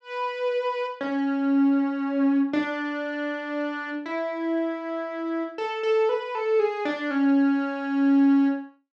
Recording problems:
none

